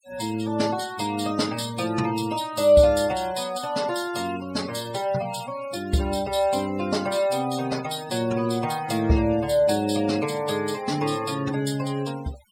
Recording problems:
denoising artefacts; signal-to-artefact ratio 16 dB

